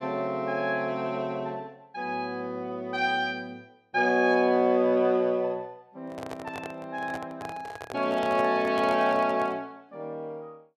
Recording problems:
handling noise; from 6 to 9.5 s; peak -6 dB vs average level

